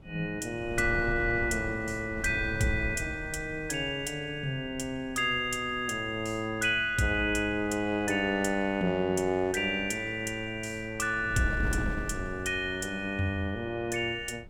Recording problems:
wind noise; below 180 Hz, SNR 13 dB

